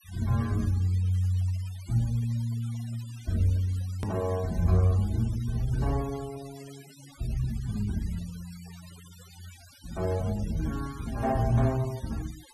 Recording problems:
noise reduction artefacts; signal-to-artefact ratio 20 dB
edit click; at 4 s

